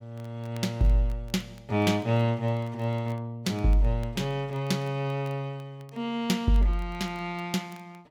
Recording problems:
crackle; vinyl, SNR 30 dB

